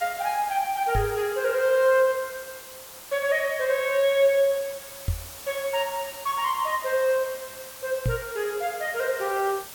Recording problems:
hiss; slope -1 dB per octave, SNR 14 dB
knock on the microphone; at 1 s, at 5 s and at 8 s; peak +2 dB vs average level

